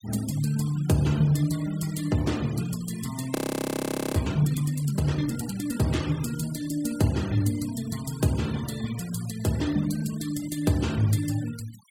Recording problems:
noise reduction artefacts; signal-to-artefact ratio 16 dB
audio freezing; at 3.5 s for 1 s

